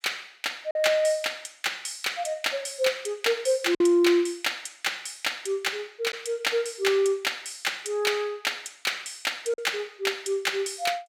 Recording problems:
packet loss; 1.4% of the sound replaced, filled with silence

